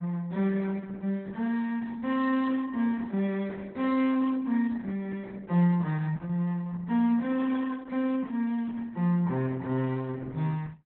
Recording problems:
lossy codec; Opus, log-spectral distance 2 dB, nothing above 3.9 kHz

